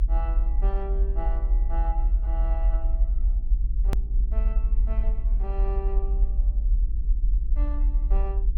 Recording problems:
hum; 60 Hz, harmonics up to 780 Hz, SNR 14 dB
low-frequency rumble; below 50 Hz, strongest tone 38 Hz, SNR -13 dB
edit click; at 4 s

